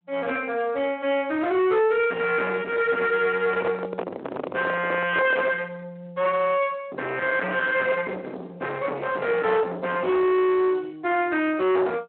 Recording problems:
phone line; 370 Hz to 3.2 kHz, Speex
distorted audio; soft clipping, signal-to-distortion ratio 7 dB
handling noise; from 3.5 to 5.5 s; peak +1 dB vs average level

